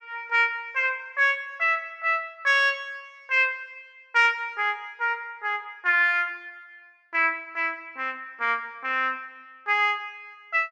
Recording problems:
none

